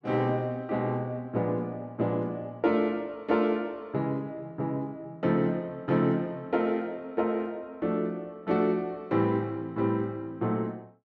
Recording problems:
none

